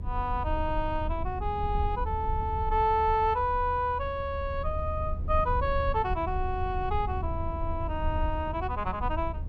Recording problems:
low-frequency rumble; below 78 Hz, SNR 5 dB

